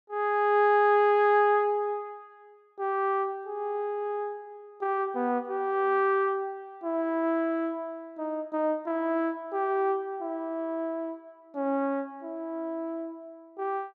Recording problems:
none

